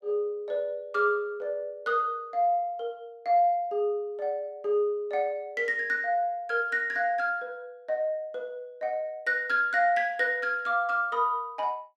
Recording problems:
none

